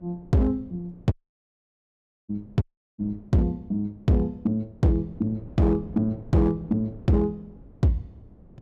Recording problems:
distortion; hard clipping, signal-to-distortion ratio 11 dB
wind on the microphone; below 280 Hz, SNR 21 dB
dropout; at 1 s for 1 s and at 2.5 s

